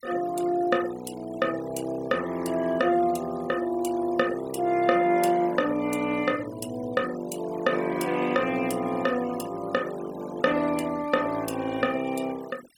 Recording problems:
noise reduction artefacts; signal-to-artefact ratio 19 dB

